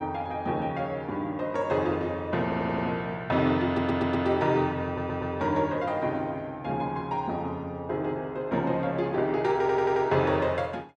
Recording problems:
audio stuttering; 4 times, first at 2.5 s

